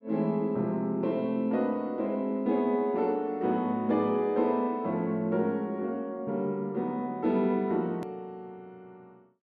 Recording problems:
hard cut with a click; at 8 s

